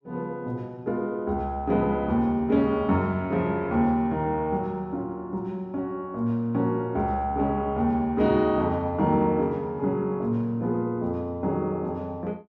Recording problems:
none

